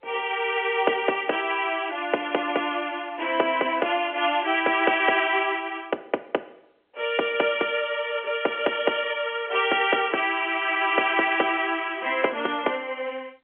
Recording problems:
telephone audio; 280 Hz to 3.3 kHz, G.711

